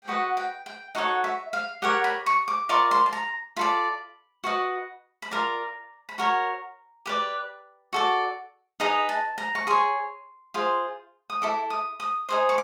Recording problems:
none

